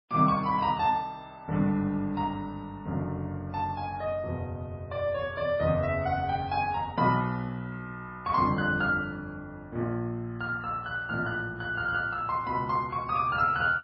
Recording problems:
lossy codec; MP3, log-spectral distance 2 dB, nothing above 4.5 kHz

